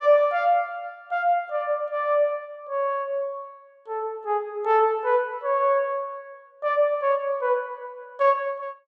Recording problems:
none

